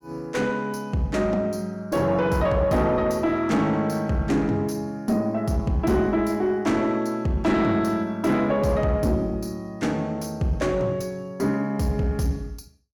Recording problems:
distorted audio; soft clipping, signal-to-distortion ratio 10 dB

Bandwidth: 17 kHz